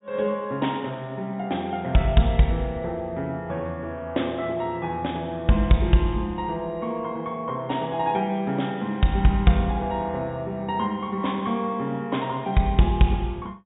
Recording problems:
low-pass filter; nothing above 4 kHz

